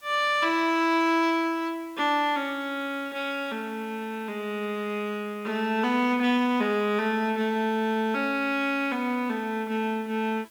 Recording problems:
hiss; slope -1 dB per octave, SNR 28 dB

